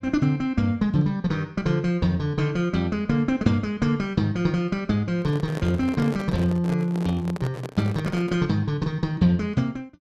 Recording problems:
handling noise; from 5 to 8.5 s; peak -5 dB vs average level

